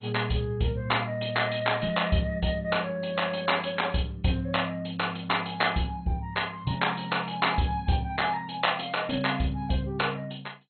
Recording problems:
codec artefacts; MP2, log-spectral distance 6 dB, nothing above 4.2 kHz

